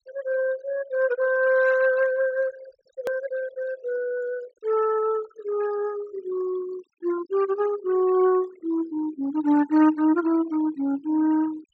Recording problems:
low-pass filter; nothing above 8 kHz
noise reduction artefacts; signal-to-artefact ratio 20 dB
click at an edit; at 3 s

